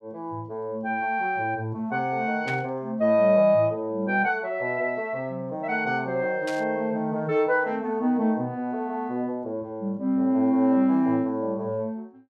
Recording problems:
burst of static; at 2.5 s and at 6.5 s; peak -7 dB vs average level

